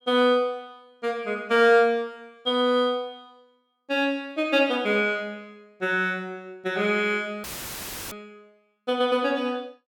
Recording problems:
audio cutting out; at 7.5 s for 0.5 s; filled with static

